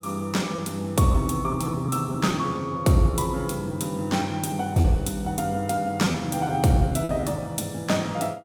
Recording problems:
lost packets; 5% of the sound replaced, filled with repeated pitch periods

